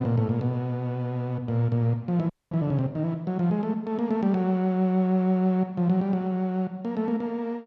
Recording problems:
audio freezing; at 2.5 s

